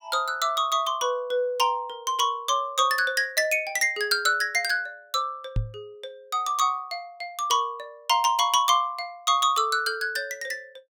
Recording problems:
microphone bump; at 5.5 s; peak +1 dB vs average level

